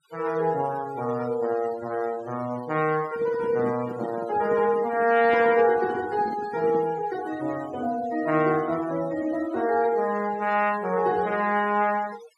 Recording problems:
denoising artefacts; signal-to-artefact ratio 19 dB
handling noise; from 3 to 7 s; peak -6 dB vs average level

